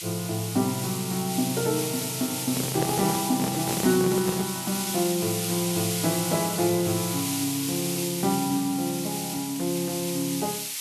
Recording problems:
hiss; slope +5 dB per octave, SNR 3 dB
handling noise; from 2.5 to 4.5 s; peak +2 dB vs average level

